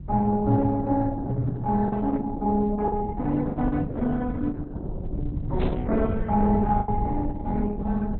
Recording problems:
lossy compression; MP3, then Opus, log-spectral distance 2 dB, nothing above 3.9 kHz
low-frequency rumble; below 120 Hz, SNR 8 dB
lost packets; 3% of the sound replaced, filled with the last packet
static burst; at 5.5 s; peak -15 dB vs average level

